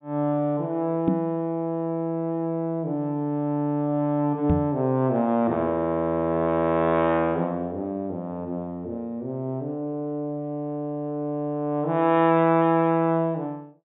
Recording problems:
treble missing; nothing above 4 kHz
microphone thump; at 1 s and at 4.5 s; peak +6 dB vs average level

